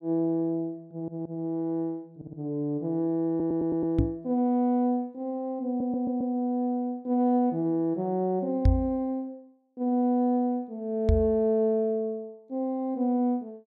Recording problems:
stutter; 4 times, first at 1 s
microphone bump; at 4 s, at 8.5 s and at 11 s; peak +9 dB vs average level

